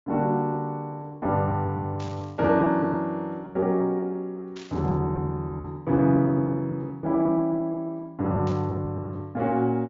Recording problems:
treble cut off; nothing above 7.2 kHz
packet loss; 9% of the sound replaced, filled with repeated pitch periods
static burst; at 2 s, at 4.5 s and at 8.5 s; peak -15 dB vs average level

